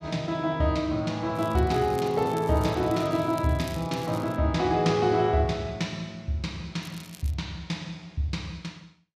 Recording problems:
crackle; from 1.5 to 4.5 s and at 7 s; loose cable, SNR 21 dB

